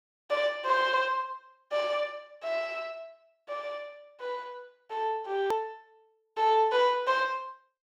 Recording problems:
hard cut with a click; at 5.5 s

